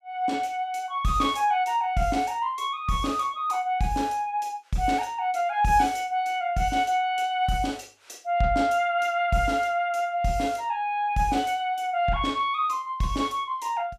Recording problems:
none

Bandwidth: 14 kHz